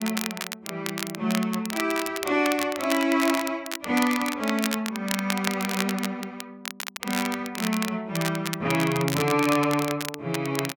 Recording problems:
crackling; vinyl, SNR 7 dB

